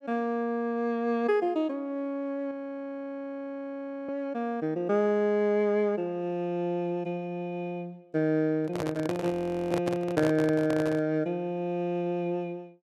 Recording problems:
frozen audio; at 2.5 s for 1.5 s and at 9.5 s
microphone handling noise; from 8.5 to 11 s; peak +1 dB vs average level

